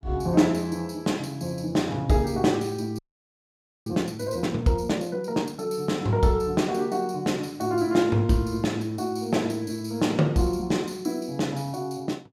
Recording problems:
audio freezing; at 3 s for 1 s

